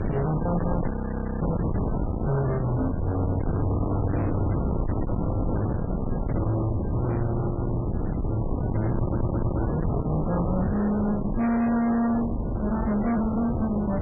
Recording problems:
lossy compression; MP3, log-spectral distance 2 dB, nothing above 2.4 kHz
distortion; soft clipping, signal-to-distortion ratio 7 dB
wind on the microphone; below 370 Hz, SNR 1 dB
frozen audio; at 1 s for 0.5 s
stutter; at 9 s

